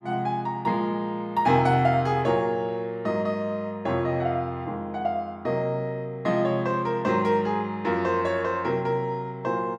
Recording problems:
none

